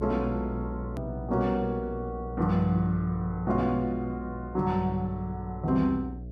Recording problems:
hum; 60 Hz, harmonics up to 660 Hz, SNR 10 dB
hard cut with a click; at 1 s

